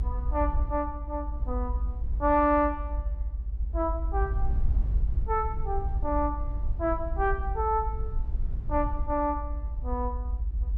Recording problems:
rumble; below 64 Hz, SNR 2 dB

